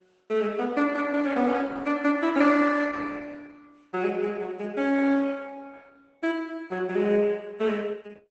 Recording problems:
lossy compression; Opus, log-spectral distance 3 dB, nothing above 8 kHz

